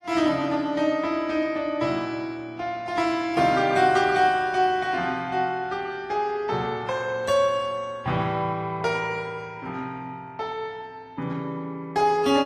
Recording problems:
codec artefacts; AAC, log-spectral distance 2 dB, nothing above 12.3 kHz

